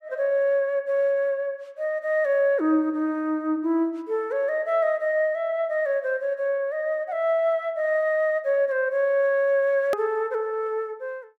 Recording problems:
click at an edit; at 10 s

